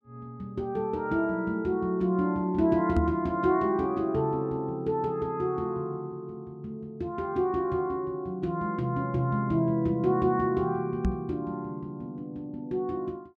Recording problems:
microphone bump; at 3 s and at 11 s; peak +5 dB vs average level

